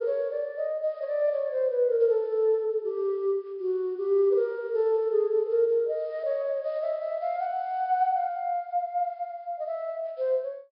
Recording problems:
treble missing; nothing above 5.5 kHz

